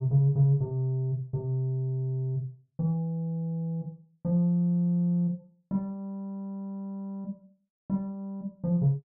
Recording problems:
none

